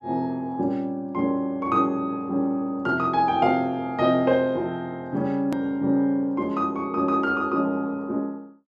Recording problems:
click at an edit; at 5.5 s

